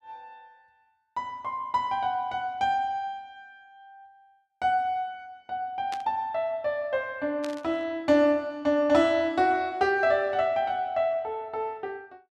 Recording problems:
burst of static; at 6 s and at 7.5 s; peak -8 dB vs average level

